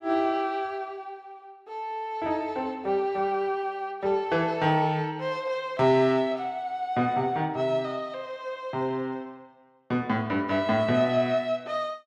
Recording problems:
none

